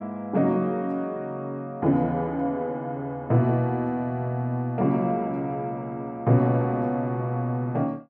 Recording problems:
none

